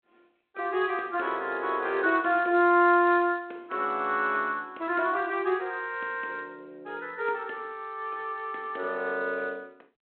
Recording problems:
telephone audio; 240 Hz to 3.5 kHz, G.726

